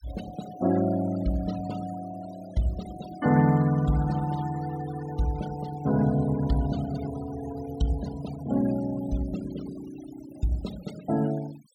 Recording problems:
noise reduction artefacts; signal-to-artefact ratio 18 dB

